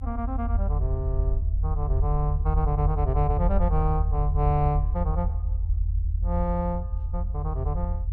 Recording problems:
rumble; below 80 Hz, strongest tone 44 Hz, SNR -3 dB

